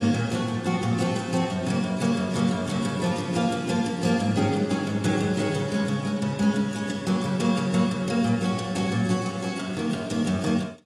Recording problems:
lossy codec; AAC, log-spectral distance 4 dB

